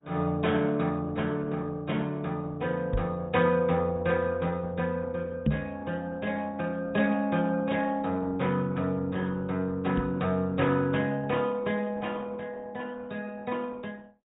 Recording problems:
low-pass filter; nothing above 3.8 kHz
codec artefacts; Opus, log-spectral distance 3 dB
microphone bump; at 3 s, at 5.5 s and at 10 s; peak +8 dB vs average level

